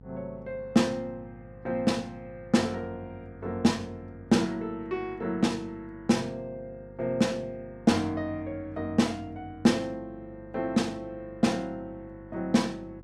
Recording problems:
hum; 50 Hz, harmonics up to 750 Hz, SNR 21 dB

